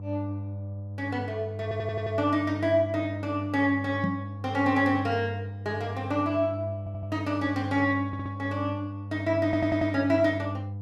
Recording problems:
hum; 50 Hz, harmonics up to 500 Hz, SNR 8 dB
stutter; 4 times, first at 1.5 s
microphone bump; at 4 s; peak +3 dB vs average level

